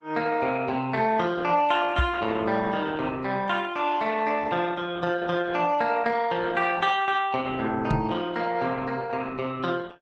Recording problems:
lossy codec; Opus, log-spectral distance 4 dB
knock on the microphone; at 2 s and at 8 s; peak +5 dB vs average level

